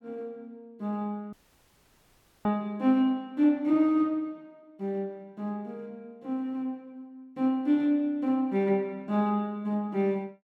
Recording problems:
audio cutting out; at 1.5 s for 1 s

